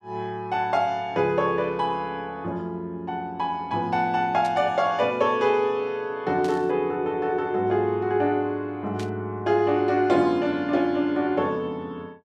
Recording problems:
static burst; at 4.5 s, at 6.5 s and at 9 s; peak -11 dB vs average level

